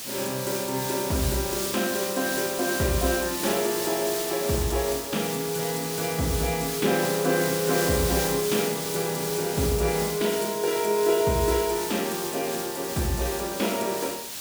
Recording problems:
background hiss; slope +1 dB per octave, SNR 4 dB

